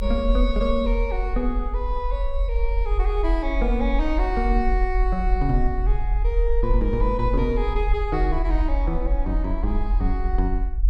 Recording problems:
rumble; below 44 Hz, strongest tone 42 Hz, SNR -1 dB

